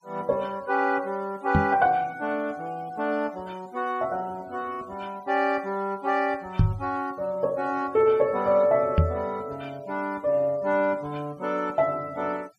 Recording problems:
denoising artefacts; signal-to-artefact ratio 27 dB
microphone bump; at 1.5 s, at 6.5 s and at 9 s; peak +10 dB vs average level

